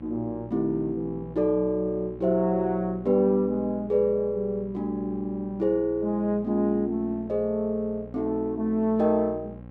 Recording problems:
hum; 60 Hz, harmonics up to 1.3 kHz, SNR 17 dB

